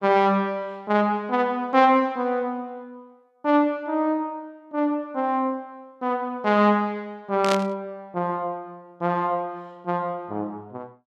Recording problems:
static burst; at 7.5 s; peak +1 dB vs average level

